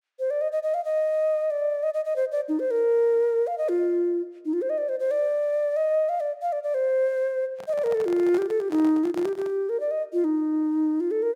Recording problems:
microphone handling noise; from 7.5 to 9.5 s; peak -9 dB vs average level

